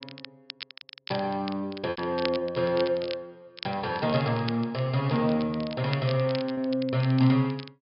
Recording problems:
low-pass filter; nothing above 5.5 kHz
crackling; vinyl, SNR 15 dB
lost packets; 1.8% of the sound replaced, filled with repeated pitch periods

